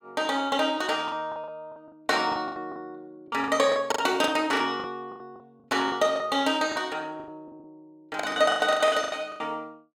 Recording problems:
lost packets; 17% of the sound replaced, filled with the last packet

